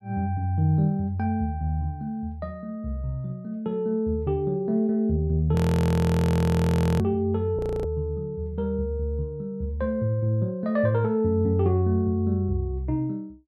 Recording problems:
audio freezing; at 5.5 s for 1.5 s and at 7.5 s

